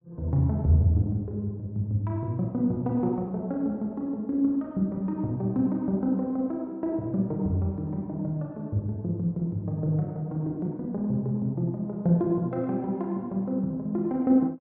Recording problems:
none

